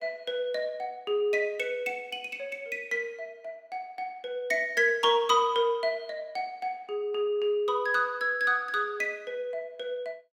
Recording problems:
none

